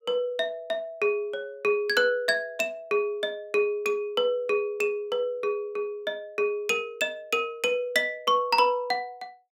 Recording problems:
none

